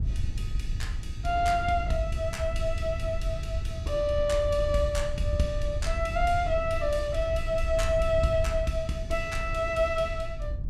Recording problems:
wind on the microphone; below 84 Hz, SNR 5 dB

